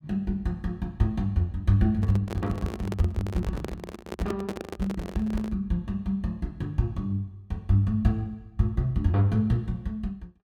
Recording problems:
handling noise; from 2 to 5.5 s; peak -2 dB vs average level

